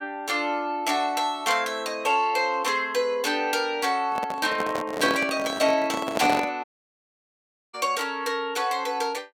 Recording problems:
microphone handling noise; from 4 to 6.5 s; peak +2 dB vs average level
audio cutting out; at 6.5 s for 1 s

